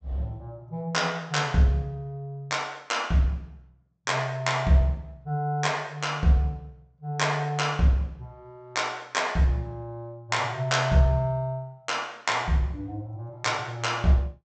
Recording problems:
treble cut off; nothing above 8 kHz

